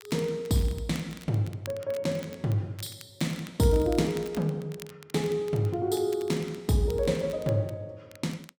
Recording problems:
crackle; vinyl, SNR 20 dB

